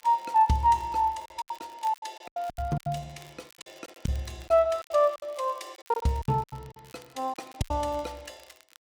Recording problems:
crackling; vinyl, SNR 27 dB
packet loss; 16% of the sound replaced, filled with silence

